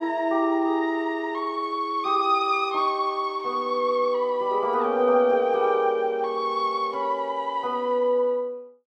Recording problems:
none

